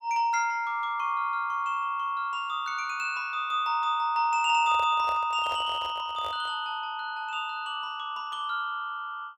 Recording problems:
handling noise; from 4.5 to 6.5 s; peak -8 dB vs average level

